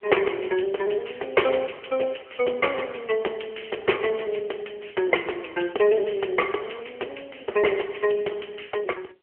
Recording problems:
phone line; 320 Hz to 3.1 kHz, AMR-NB

